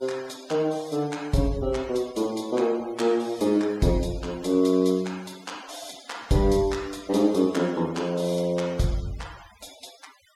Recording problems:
noise reduction artefacts; signal-to-artefact ratio 23 dB

